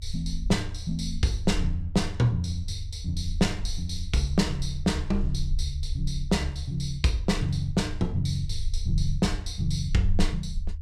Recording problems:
low-frequency rumble; below 74 Hz, strongest tone 22 Hz, SNR 7 dB

